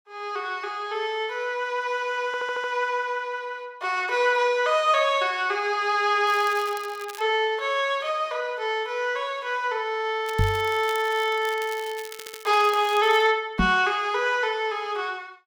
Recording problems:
stutter; at 2.5 s and at 12 s
crackle; at 6.5 s and from 10 to 13 s; loose cable, SNR 18 dB
knock on the microphone; at 10 s and at 14 s; peak +4 dB vs average level

